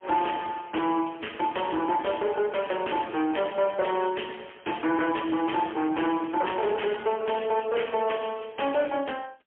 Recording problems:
phone line; 280 Hz to 3.2 kHz, AMR-NB, then MP3
distortion; hard clipping, signal-to-distortion ratio 11 dB

